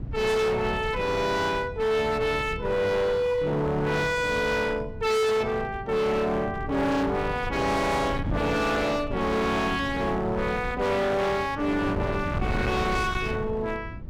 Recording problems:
distorted audio; hard clipping, uneven, signal-to-distortion ratio 7 dB
wind on the microphone; below 230 Hz, SNR 10 dB

